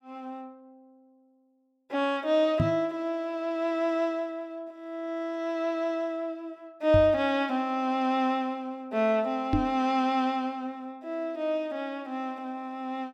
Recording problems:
microphone thump; at 2.5 s, at 7 s and at 9.5 s; peak +6 dB vs average level

